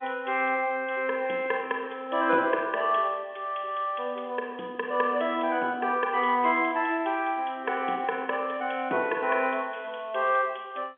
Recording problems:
phone line; 220 Hz to 3.4 kHz, G.711

